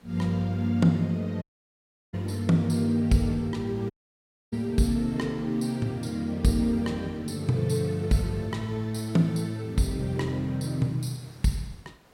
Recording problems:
hiss; slope -5 dB per octave, SNR 28 dB
audio cutting out; at 1.5 s for 0.5 s and at 4 s for 0.5 s

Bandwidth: 16 kHz